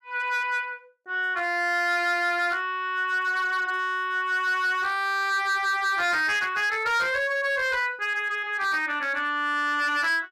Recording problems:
distorted audio; hard clipping, signal-to-distortion ratio 11 dB

